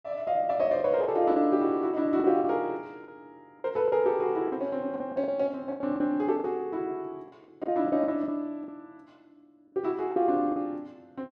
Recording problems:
lost packets; 9% of the sound replaced, filled with the last packet

